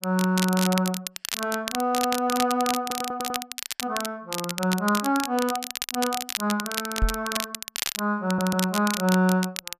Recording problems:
crackle; vinyl, SNR 5 dB
audio stuttering; at 3 s and at 8 s
microphone bump; at 7 s; peak +5 dB vs average level

